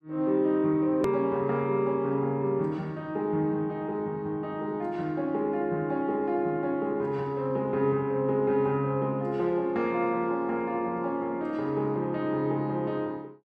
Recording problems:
click at an edit; at 1 s

